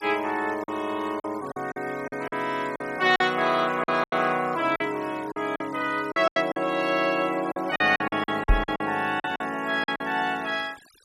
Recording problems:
denoising artefacts; signal-to-artefact ratio 21 dB
lost packets; 11% of the sound replaced, filled with silence
microphone bump; at 8.5 s; peak +6 dB vs average level

